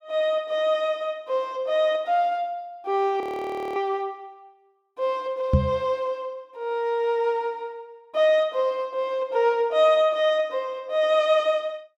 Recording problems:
audio freezing; at 3 s for 0.5 s
knock on the microphone; at 5.5 s; peak +8 dB vs average level

